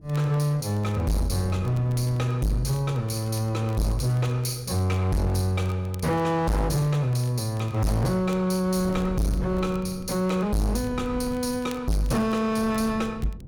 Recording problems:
distorted audio; hard clipping, signal-to-distortion ratio 6 dB
wind noise; below 190 Hz, SNR 16 dB
crackle; vinyl, SNR 27 dB

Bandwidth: 18 kHz